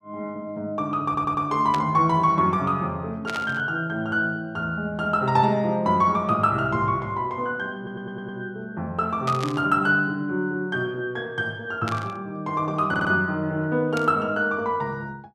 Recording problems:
stutter; at 1 s, at 8 s and at 13 s
static burst; 5 times, first at 1.5 s; peak -5 dB vs average level

